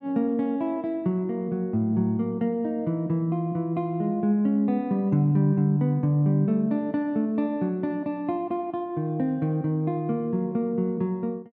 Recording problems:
none

